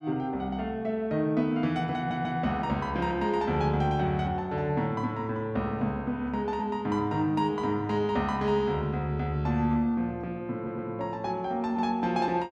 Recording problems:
audio stuttering; at 2 s and at 11 s

